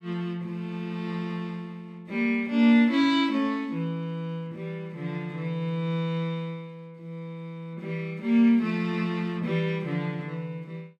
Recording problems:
none

